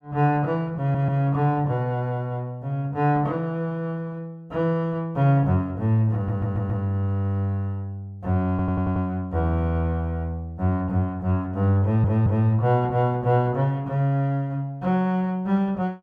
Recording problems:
stutter; 4 times, first at 1 s

